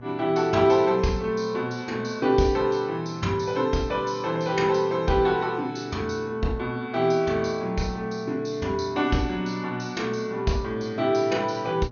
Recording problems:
codec artefacts; MP2, log-spectral distance 2 dB, nothing above 6.7 kHz
hum; 60 Hz, harmonics up to 1.1 kHz, SNR 19 dB

